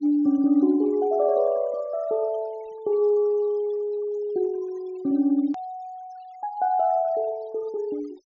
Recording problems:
treble missing; nothing above 7 kHz
denoising artefacts; signal-to-artefact ratio 27 dB
edit click; at 5.5 s

